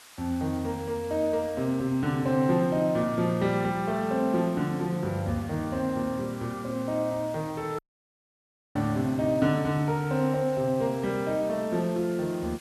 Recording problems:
hiss; slope +1 dB per octave, SNR 22 dB
dropout; at 8 s for 1 s

